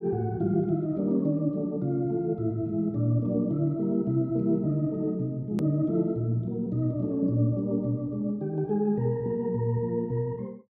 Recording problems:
click at an edit; at 5.5 s

